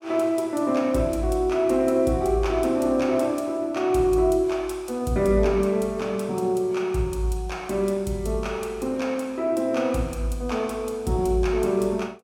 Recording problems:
none

